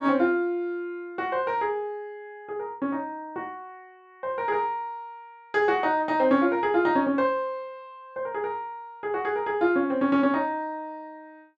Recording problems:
none

